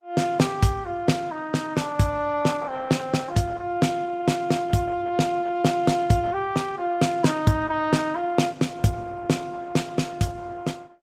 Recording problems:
lossy compression; Opus, log-spectral distance 3 dB

